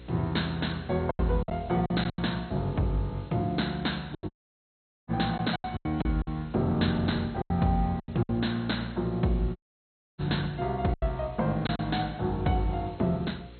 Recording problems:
codec artefacts; MP2, log-spectral distance 8 dB, nothing above 4.2 kHz
hum; 60 Hz, harmonics up to 540 Hz, SNR 19 dB
background hiss; SNR 27 dB
packet loss; 8% of the sound replaced, filled with silence
dropout; at 4.5 s for 1 s and at 9.5 s for 0.5 s

